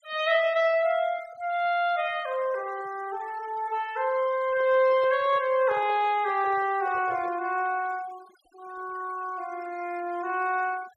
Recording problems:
denoising artefacts; signal-to-artefact ratio 22 dB
handling noise; from 4.5 to 7.5 s; peak -11 dB vs average level

